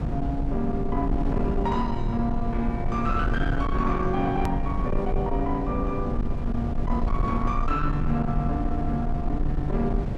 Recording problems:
distorted audio; soft clipping, signal-to-distortion ratio 11 dB
rumble; below 130 Hz, SNR 2 dB
click at an edit; at 4.5 s

